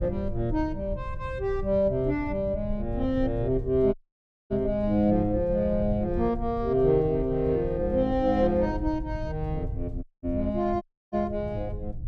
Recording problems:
rumble; below 100 Hz, SNR 10 dB
audio cutting out; at 4 s for 0.5 s, at 10 s and at 11 s

